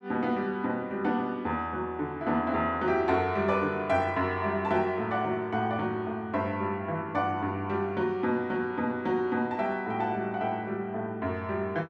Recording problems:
none

